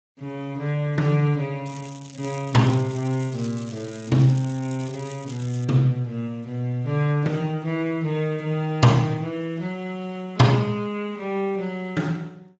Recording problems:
lossy codec; Speex, log-spectral distance 4 dB
crackling; from 1.5 to 5.5 s; loose cable, SNR 20 dB

